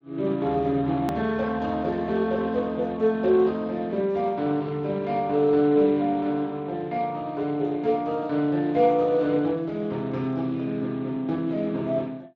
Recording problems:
codec artefacts; Speex, log-spectral distance 2 dB, nothing above 19.5 kHz
click at an edit; at 1 s

